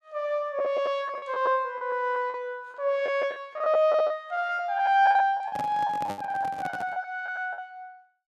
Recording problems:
lost packets; 12% of the sound replaced, filled with the last packet
handling noise; from 5.5 to 7 s; peak -5 dB vs average level

